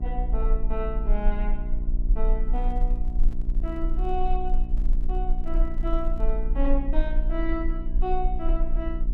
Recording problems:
mains hum; 60 Hz, harmonics up to 720 Hz, SNR 6 dB
low-frequency rumble; below 36 Hz, strongest tone 18 Hz, SNR -4 dB
handling noise; from 2.5 to 6.5 s; peak -10 dB vs average level

